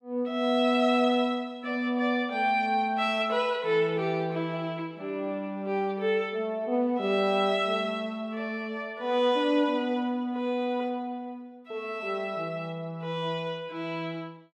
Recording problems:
none

